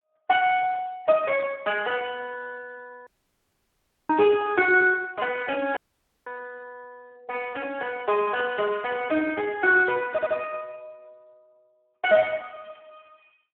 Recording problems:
telephone audio; 280 Hz to 3.1 kHz, Speex
dropout; at 3 s for 1 s and at 6 s
stutter; at 10 s

